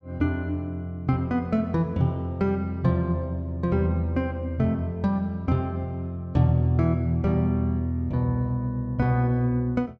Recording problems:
none

